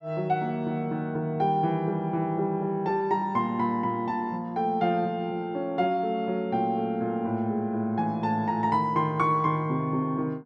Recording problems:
none

